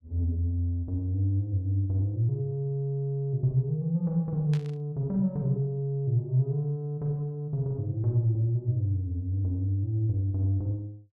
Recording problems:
static burst; at 4.5 s; peak -11 dB vs average level

